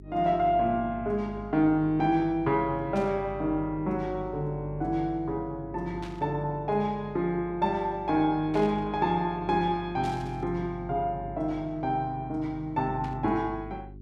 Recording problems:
hum; 50 Hz, harmonics up to 400 Hz, SNR 16 dB
static burst; 5 times, first at 3 s; peak -12 dB vs average level

